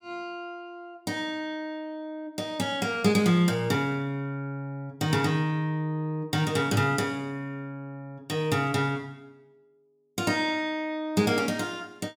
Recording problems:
none

